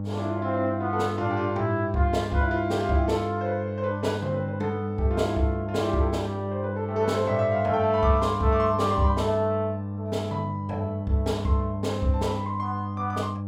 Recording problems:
hum; 50 Hz, harmonics up to 800 Hz, SNR 6 dB

